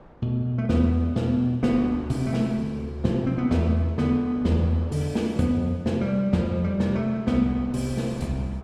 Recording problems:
wind on the microphone; below 750 Hz, SNR 22 dB

